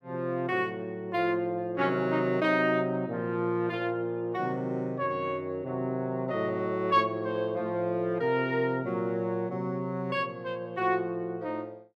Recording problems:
none

